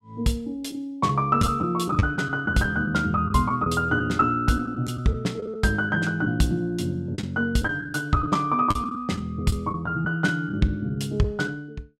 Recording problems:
packet loss; 7% of the sound replaced, filled with the last packet

